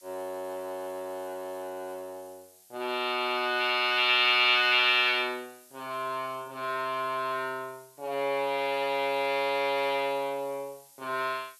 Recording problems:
hiss; slope +4 dB per octave, SNR 27 dB

